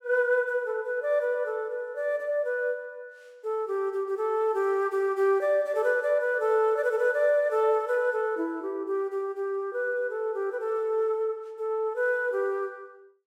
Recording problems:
none

